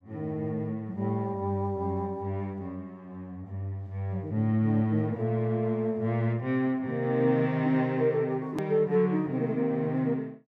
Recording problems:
click at an edit; at 8.5 s

